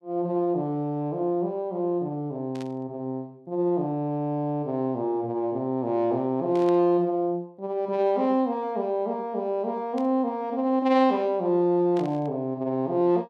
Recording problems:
static burst; 4 times, first at 2.5 s; peak -14 dB vs average level

